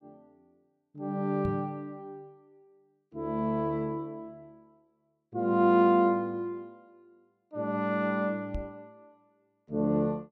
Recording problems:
microphone bump; at 1.5 s and at 8.5 s; peak -3 dB vs average level

